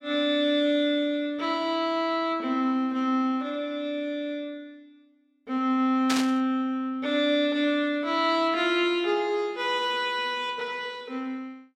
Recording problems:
burst of static; at 6 s; peak +2 dB vs average level

